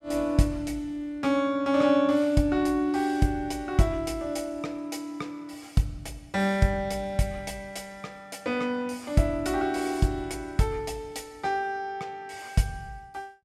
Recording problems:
none

